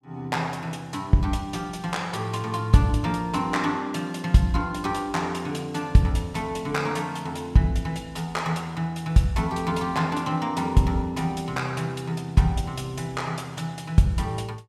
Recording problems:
none

